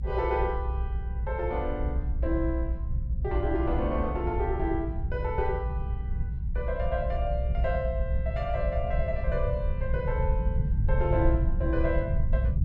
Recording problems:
low-frequency rumble; below 78 Hz, SNR -2 dB

